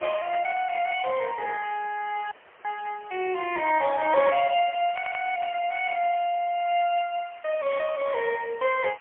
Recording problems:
telephone audio; 340 Hz to 3.1 kHz, AMR-NB, then MP3
hiss; SNR 25 dB
audio cutting out; at 2.5 s
burst of static; at 5 s; peak -8 dB vs average level
audio stuttering; at 5 s

